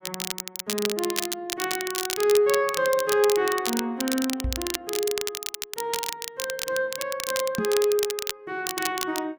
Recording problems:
crackling; vinyl, SNR 4 dB
microphone bump; at 4.5 s and at 7.5 s; peak +2 dB vs average level

